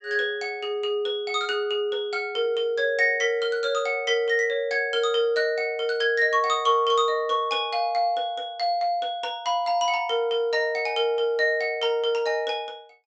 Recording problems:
low-pass filter; nothing above 8 kHz

